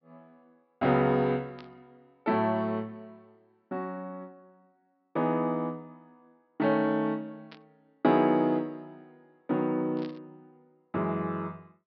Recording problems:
treble cut off; nothing above 5.5 kHz
static burst; at 1.5 s, at 7.5 s and at 10 s; peak -15 dB vs average level

